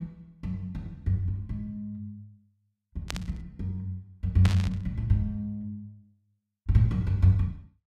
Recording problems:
burst of static; at 3 s and at 4.5 s; peak -1 dB vs average level

